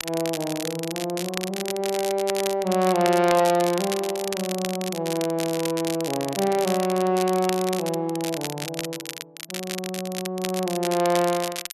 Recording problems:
crackle; vinyl, SNR 8 dB

